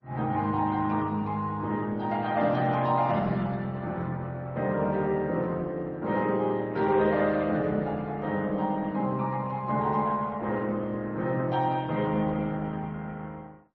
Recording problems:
lossy compression; Opus, then MP3, log-spectral distance 2 dB, nothing above 5.8 kHz

